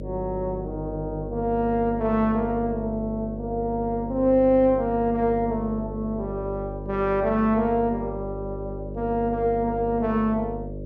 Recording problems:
hum; 50 Hz, harmonics up to 600 Hz, SNR 10 dB

